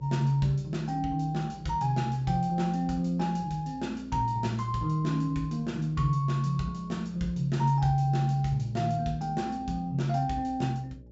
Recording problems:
treble cut off; nothing above 7.6 kHz
electrical hum; 60 Hz, harmonics up to 600 Hz, SNR 23 dB

